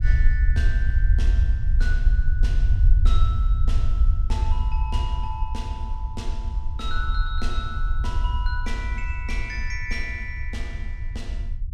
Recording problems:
rumble; below 62 Hz, SNR -10 dB

